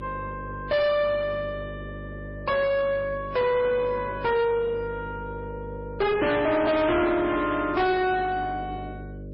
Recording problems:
lossy compression; MP3, log-spectral distance 2 dB, nothing above 5.3 kHz
distortion; soft clipping, signal-to-distortion ratio 6 dB
hum; 50 Hz, harmonics up to 600 Hz, SNR 14 dB

